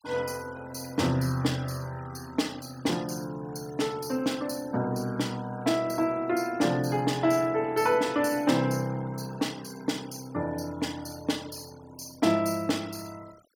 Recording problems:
denoising artefacts; signal-to-artefact ratio 21 dB

